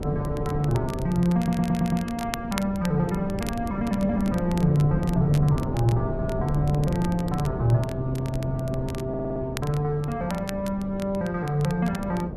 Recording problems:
wind on the microphone; below 290 Hz, SNR 7 dB
crackling; vinyl, SNR 17 dB
stutter; at 1.5 s and at 9 s

